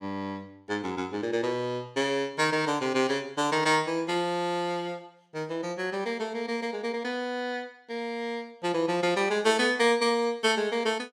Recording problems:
none

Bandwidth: 17.5 kHz